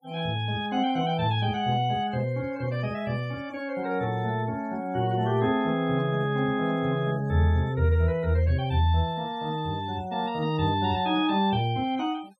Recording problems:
denoising artefacts; signal-to-artefact ratio 28 dB

